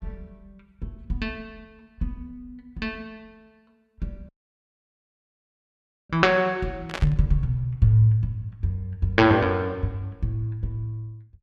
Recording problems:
audio cutting out; at 4.5 s for 2 s
static burst; at 7 s; peak -2 dB vs average level

